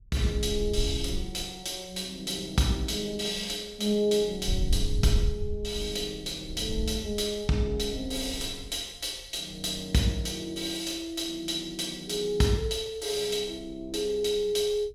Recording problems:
wind noise; below 70 Hz, SNR 6 dB

